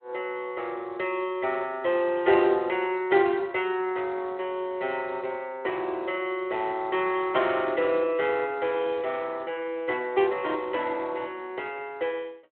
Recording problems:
telephone audio; 320 Hz to 3.3 kHz, Speex

